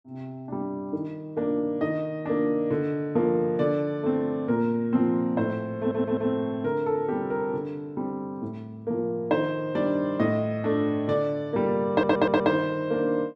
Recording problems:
audio stuttering; at 6 s and at 12 s

